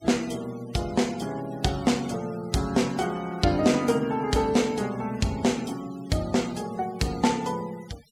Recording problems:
noise reduction artefacts; signal-to-artefact ratio 20 dB

